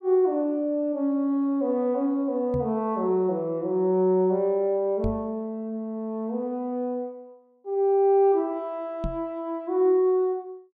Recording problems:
microphone thump; at 2.5 s, at 5 s and at 9 s; peak -3 dB vs average level

